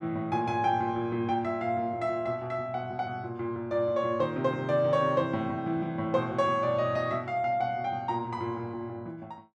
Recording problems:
none

